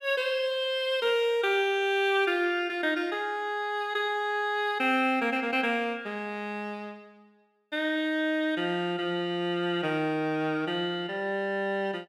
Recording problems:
none

